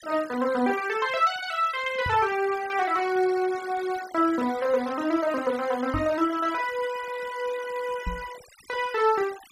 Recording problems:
noise reduction artefacts; signal-to-artefact ratio 17 dB
knock on the microphone; at 2 s, at 6 s and at 8 s; peak -3 dB vs average level

